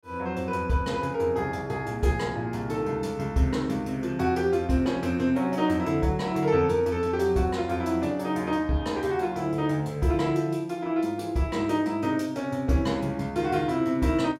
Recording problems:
none

